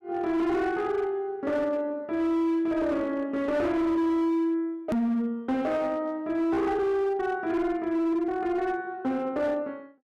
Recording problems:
distorted audio; hard clipping, signal-to-distortion ratio 12 dB
hard cut with a click; at 5 s

